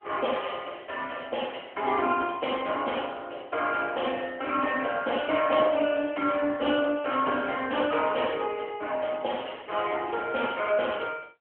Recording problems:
phone line; 240 Hz to 3.2 kHz, AMR-NB

